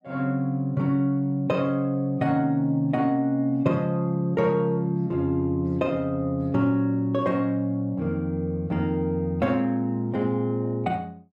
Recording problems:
none

